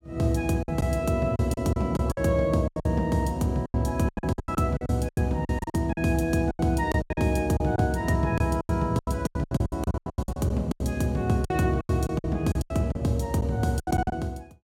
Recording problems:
lost packets; 18% of the sound replaced, filled with silence

